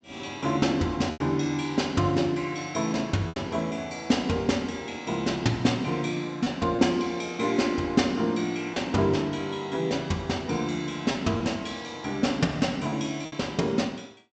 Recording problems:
treble missing; nothing above 8 kHz
packet loss; 3% of the sound replaced, filled with repeated pitch periods

